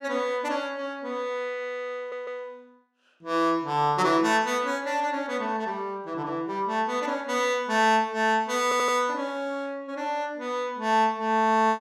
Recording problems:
audio stuttering; at 2 s and at 8.5 s

